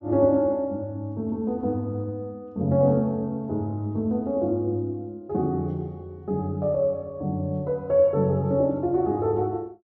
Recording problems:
treble cut off; nothing above 7.3 kHz

